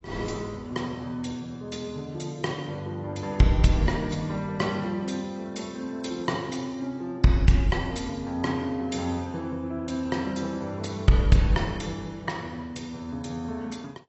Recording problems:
codec artefacts; AAC, log-spectral distance 3 dB, nothing above 7.8 kHz

